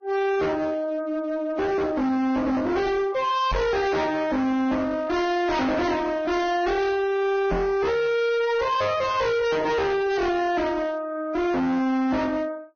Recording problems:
lossy codec; Vorbis, log-spectral distance 2 dB, nothing above 6.3 kHz
distorted audio; hard clipping, signal-to-distortion ratio 6 dB
knock on the microphone; at 3.5 s and at 7.5 s; peak +3 dB vs average level

